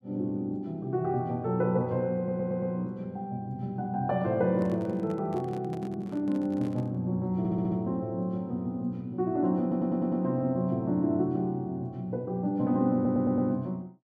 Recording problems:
audio stuttering; 4 times, first at 2 s
handling noise; from 4.5 to 7 s; peak -8 dB vs average level

